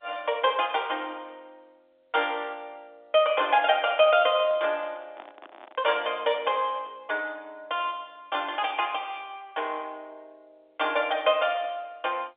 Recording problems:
telephone audio; 300 Hz to 3.7 kHz, G.711
handling noise; from 4 to 7 s; peak -13 dB vs average level

